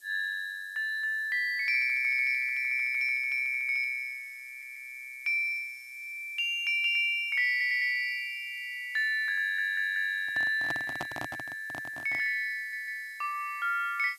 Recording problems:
hiss; SNR 28 dB
stutter; 4 times, first at 4.5 s
handling noise; from 10 to 12 s; peak -4 dB vs average level

